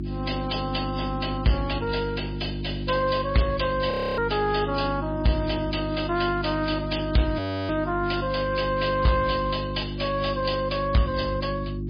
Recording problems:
lossy compression; MP3, log-spectral distance 7 dB, nothing above 5 kHz
distortion; soft clipping, signal-to-distortion ratio 12 dB
electrical hum; 50 Hz, harmonics up to 350 Hz, SNR 6 dB
frozen audio; at 4 s and at 7.5 s

